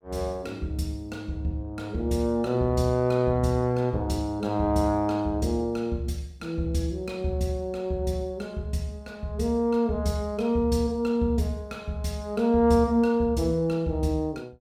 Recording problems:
none

